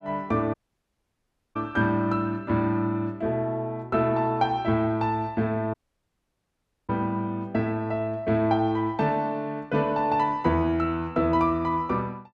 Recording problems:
audio cutting out; at 0.5 s for 1 s and at 5.5 s for 1 s

